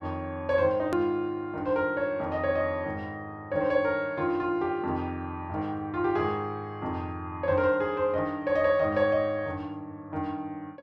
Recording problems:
click at an edit; at 1 s

